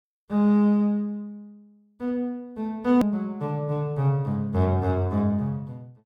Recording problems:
hard cut with a click; at 3 s

